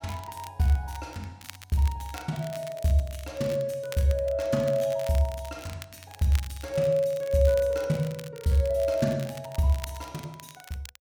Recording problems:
crackling; vinyl, SNR 19 dB

